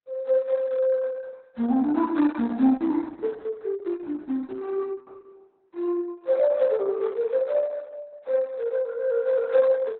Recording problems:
lossy codec; AAC, then Opus, log-spectral distance 2 dB, nothing above 4 kHz

